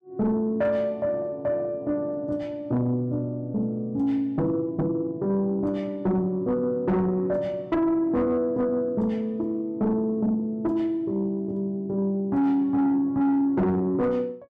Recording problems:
distortion; soft clipping, signal-to-distortion ratio 11 dB

